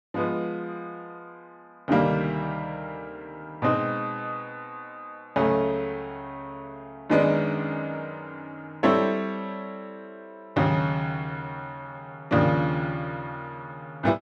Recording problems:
none

